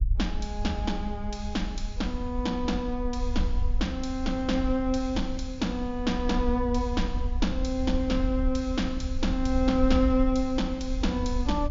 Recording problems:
low-pass filter; nothing above 7.3 kHz
rumble; below 64 Hz, SNR 5 dB

